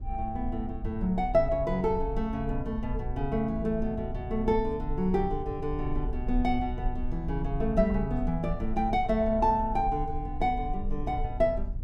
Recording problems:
low-frequency rumble; below 56 Hz, SNR 8 dB

